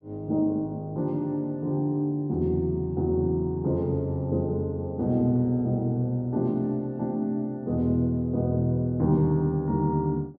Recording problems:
none

